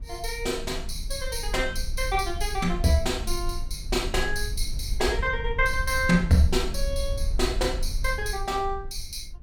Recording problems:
rumble; below 54 Hz, SNR 7 dB

